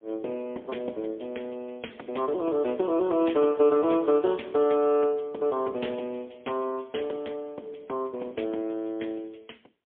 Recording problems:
telephone audio; 260 Hz to 3.4 kHz, AMR-NB, then MP3

